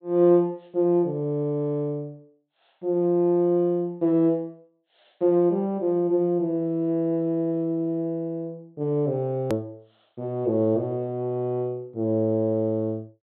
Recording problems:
treble cut off; nothing above 4 kHz
hard cut with a click; at 9.5 s

